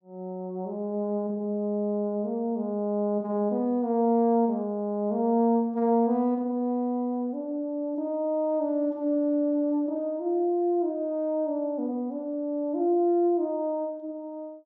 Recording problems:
none

